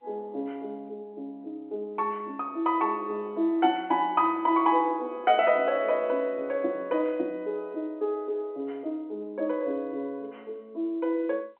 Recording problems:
telephone audio; 240 Hz to 3.4 kHz, G.711

